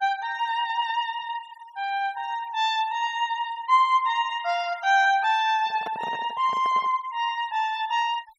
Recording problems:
denoising artefacts; signal-to-artefact ratio 21 dB
handling noise; from 5.5 to 7 s; peak -7 dB vs average level

